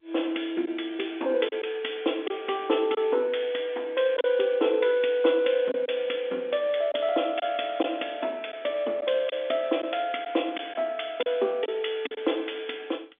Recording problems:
phone line; 240 Hz to 3.6 kHz, G.711
lost packets; 3% of the sound replaced, filled with silence

